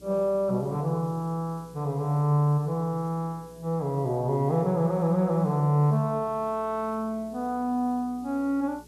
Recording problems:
hum; 60 Hz, harmonics up to 420 Hz, SNR 26 dB
background hiss; SNR 30 dB

